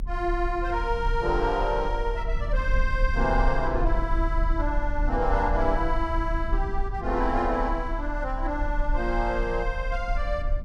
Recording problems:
rumble; below 42 Hz, strongest tone 36 Hz, SNR 3 dB

